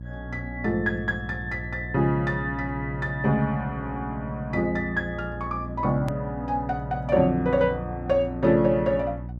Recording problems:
mains hum; 60 Hz, harmonics up to 360 Hz, SNR 11 dB
hard cut with a click; at 6 s

